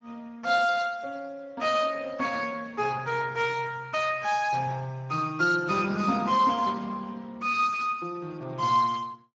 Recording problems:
lossy compression; Speex, log-spectral distance 4 dB

